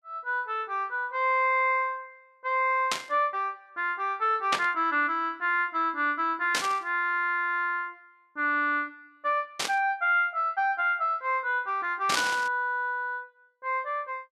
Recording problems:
burst of static; 5 times, first at 3 s; peak +4 dB vs average level

